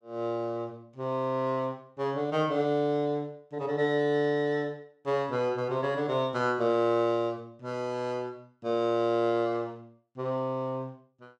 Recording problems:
none

